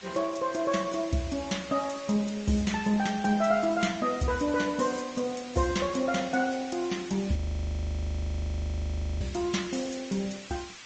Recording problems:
low-pass filter; nothing above 7.3 kHz
lossy compression; MP3, then Opus, log-spectral distance 6 dB
hiss; SNR 16 dB
frozen audio; at 7.5 s for 2 s

